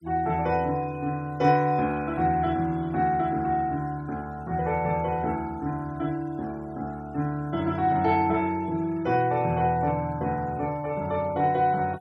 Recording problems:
noise reduction artefacts; signal-to-artefact ratio 26 dB

